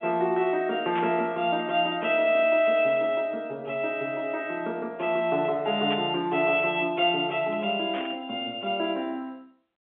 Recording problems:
telephone audio; 220 Hz to 3.4 kHz, G.711
static burst; at 1 s, at 6 s and at 8 s; peak -6 dB vs average level

